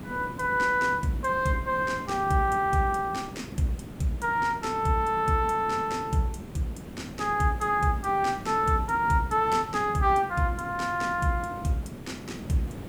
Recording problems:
background hiss; slope -8 dB per octave, SNR 13 dB

